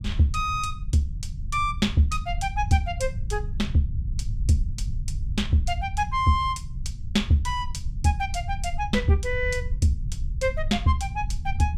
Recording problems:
rumble; below 84 Hz, SNR 7 dB

